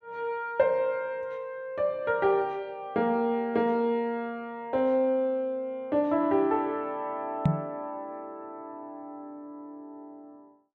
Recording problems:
microphone thump; at 7.5 s; peak +8 dB vs average level

